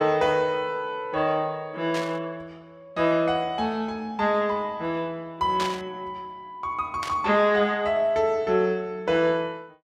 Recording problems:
burst of static; at 2 s, at 5.5 s and at 7 s; peak -3 dB vs average level

